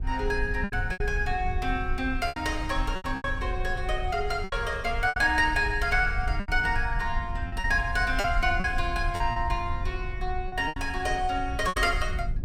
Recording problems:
rumble; below 68 Hz, SNR 6 dB
packet loss; 9% of the sound replaced, filled with repeated pitch periods

